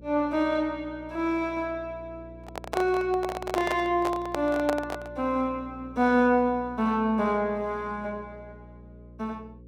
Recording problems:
hum; 60 Hz, harmonics up to 540 Hz, SNR 20 dB
handling noise; from 2.5 to 5 s; peak +1 dB vs average level

